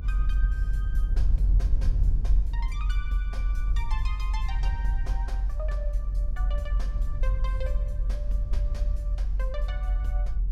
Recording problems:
low-frequency rumble; below 48 Hz, strongest tone 44 Hz, SNR -14 dB

